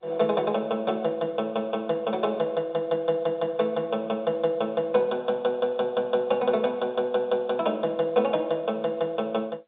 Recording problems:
telephone audio; 170 Hz to 3.7 kHz, G.711

